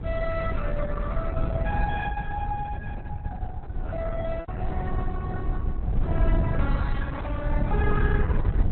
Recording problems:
lossy compression; AAC, then Opus, log-spectral distance 3 dB, nothing above 3.9 kHz
rumble; below 100 Hz, SNR -6 dB
lost packets; 1.4% of the sound replaced, filled with repeated pitch periods

